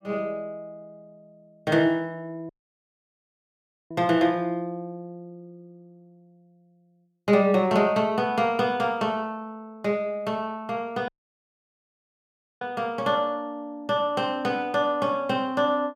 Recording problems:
audio cutting out; at 2.5 s for 1.5 s and at 11 s for 1.5 s

